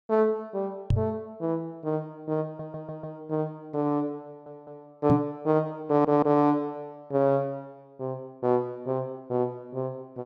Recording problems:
knock on the microphone; at 1 s and at 5 s; peak +9 dB vs average level
audio stuttering; at 2.5 s, at 4.5 s and at 6 s

